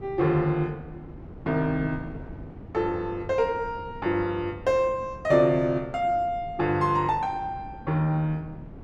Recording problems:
wind on the microphone; below 310 Hz, SNR 17 dB

